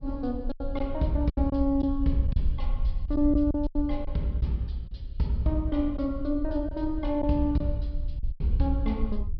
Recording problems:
treble missing; nothing above 5.5 kHz
low-frequency rumble; below 58 Hz, SNR 6 dB
lost packets; 7% of the sound replaced, filled with silence

